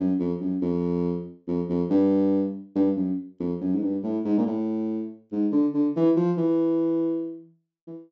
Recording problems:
low-pass filter; nothing above 8 kHz

